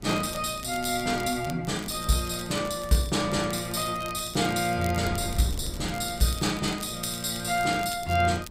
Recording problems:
wind noise; below 200 Hz, SNR 16 dB
crackle; vinyl, SNR 16 dB

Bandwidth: 15.5 kHz